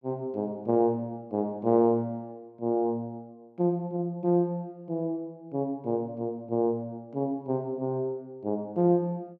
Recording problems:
none

